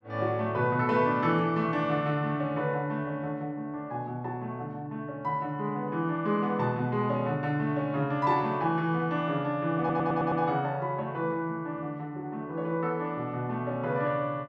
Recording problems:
stutter; at 10 s

